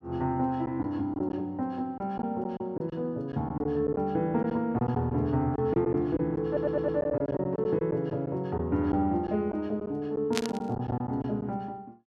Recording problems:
packet loss; 7% of the sound replaced, filled with silence
stutter; at 6.5 s
burst of static; at 10 s; peak +4 dB vs average level

